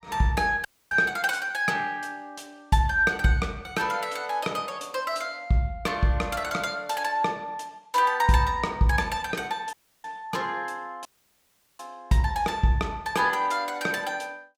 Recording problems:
audio cutting out; at 0.5 s, at 9.5 s and at 11 s for 0.5 s

